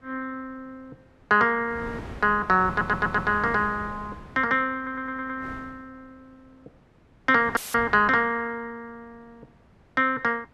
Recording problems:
wind noise; below 610 Hz, SNR 17 dB
stutter; at 2.5 s and at 5 s
dropout; at 7.5 s; filled with static

